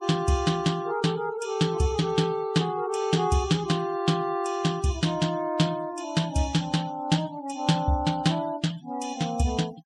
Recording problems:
denoising artefacts; signal-to-artefact ratio 20 dB

